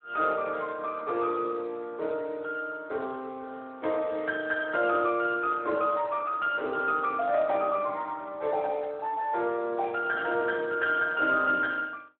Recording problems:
phone line; 280 Hz to 2.8 kHz, Speex

